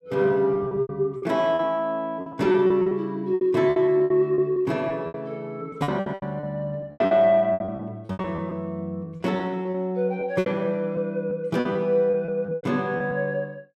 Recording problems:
lost packets; 15% of the sound replaced, filled with repeated pitch periods

